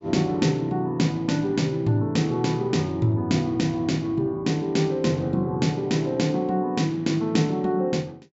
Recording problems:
low-pass filter; nothing above 8 kHz

